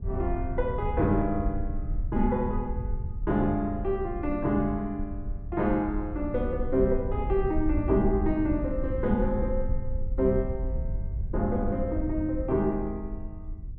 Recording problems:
low-frequency rumble; below 76 Hz, SNR 5 dB

